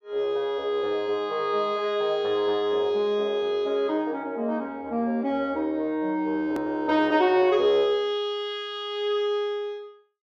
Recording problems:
click at an edit; at 6.5 s

